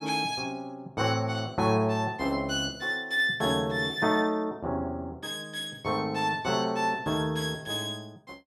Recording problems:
none

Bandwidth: 13 kHz